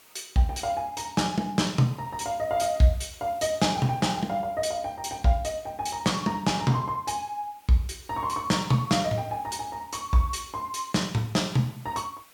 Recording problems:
background hiss; slope -1 dB per octave, SNR 26 dB

